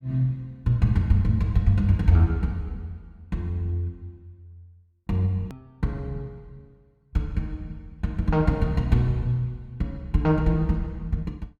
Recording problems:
edit click; at 5.5 s

